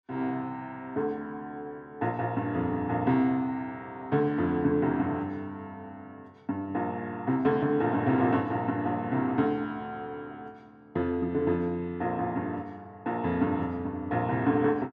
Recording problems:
none

